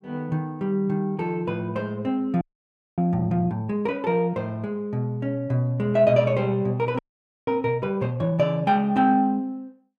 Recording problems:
audio freezing; at 2.5 s for 0.5 s and at 7 s

